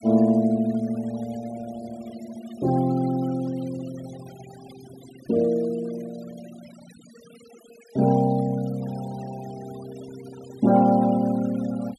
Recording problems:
denoising artefacts; signal-to-artefact ratio 21 dB

